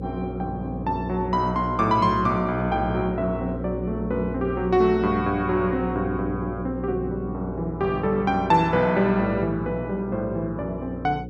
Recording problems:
electrical hum; 60 Hz, harmonics up to 540 Hz, SNR 8 dB

